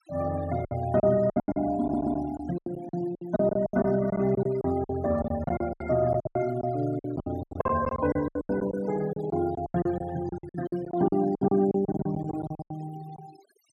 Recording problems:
denoising artefacts; signal-to-artefact ratio 18 dB
packet loss; 20% of the sound replaced, filled with silence
stutter; at 2 s

